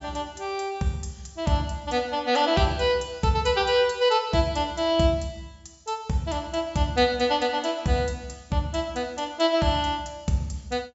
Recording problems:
low-pass filter; nothing above 8 kHz

